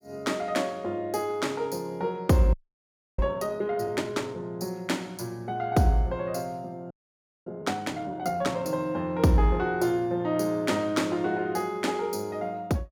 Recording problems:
audio freezing; at 2.5 s for 0.5 s and at 7 s for 0.5 s

